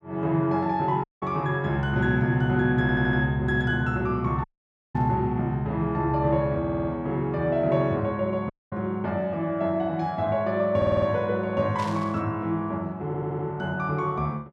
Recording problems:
dropout; at 1 s, at 4.5 s for 0.5 s and at 8.5 s
stutter; 4 times, first at 3 s
static burst; at 5 s and at 12 s; peak -11 dB vs average level

